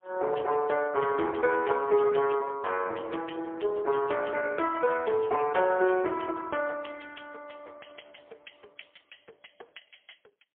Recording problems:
telephone audio; 340 Hz to 2.8 kHz, AMR-NB, then MP3

